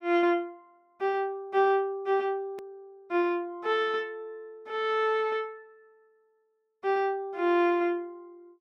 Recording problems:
click at an edit; at 2.5 s

